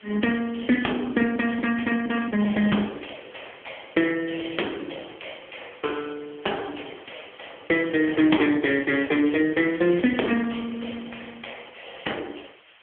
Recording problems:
telephone audio; 240 Hz to 3.3 kHz, AMR-NB
hiss; SNR 27 dB

